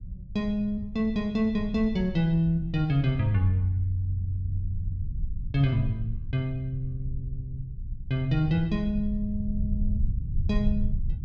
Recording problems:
low-frequency rumble; below 88 Hz, SNR 7 dB

